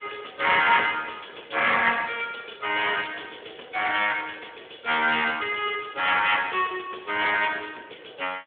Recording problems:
telephone audio; 280 Hz to 3.4 kHz, Speex
hiss; SNR 44 dB

